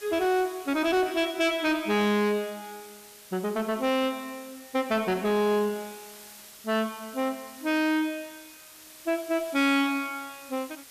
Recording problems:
distorted audio; soft clipping, signal-to-distortion ratio 7 dB
hiss; slope +1 dB per octave, SNR 19 dB

